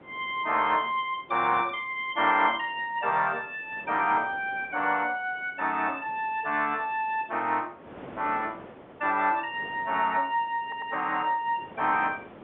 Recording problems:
phone line; 300 Hz to 3.7 kHz, G.711
wind noise; below 950 Hz, SNR 22 dB
audio stuttering; at 11 s

